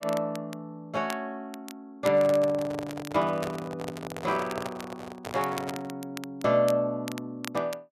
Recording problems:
crackling; vinyl, SNR 16 dB
handling noise; from 2 to 6 s; peak -2 dB vs average level

